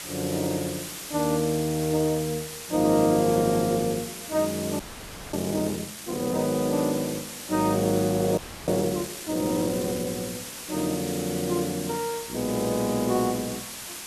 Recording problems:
hiss; slope 0 dB per octave, SNR 9 dB
frozen audio; at 5 s for 0.5 s and at 8.5 s

